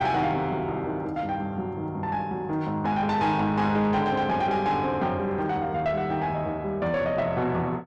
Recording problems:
distorted audio; soft clipping, signal-to-distortion ratio 11 dB

